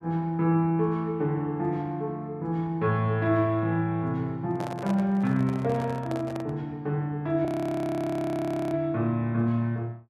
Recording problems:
microphone handling noise; from 4.5 to 6.5 s; peak -5 dB vs average level
frozen audio; at 7.5 s for 1.5 s

